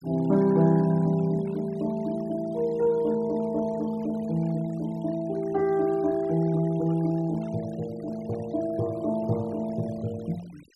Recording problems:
noise reduction artefacts; signal-to-artefact ratio 23 dB

